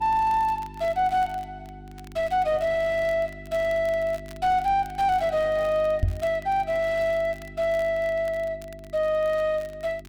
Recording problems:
distorted audio; soft clipping, signal-to-distortion ratio 11 dB
hum; 50 Hz, harmonics up to 400 Hz, SNR 19 dB
crackle; vinyl, SNR 27 dB
microphone bump; at 6 s; peak +5 dB vs average level

